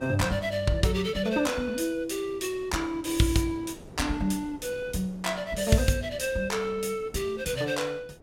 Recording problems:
wind on the microphone; below 460 Hz, SNR 21 dB

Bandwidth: 16 kHz